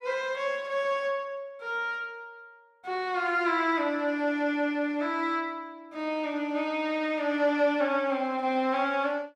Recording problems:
none

